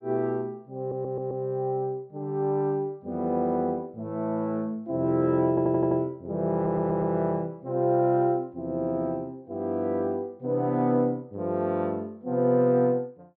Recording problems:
stutter; at 1 s, at 5.5 s and at 6.5 s

